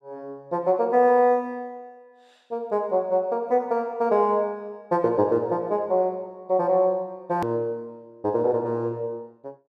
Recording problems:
hard cut with a click; at 7.5 s

